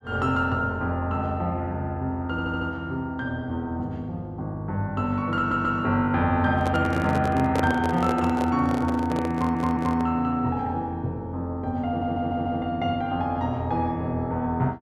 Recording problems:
audio stuttering; 4 times, first at 2.5 s
handling noise; from 6.5 to 10 s; peak +2 dB vs average level

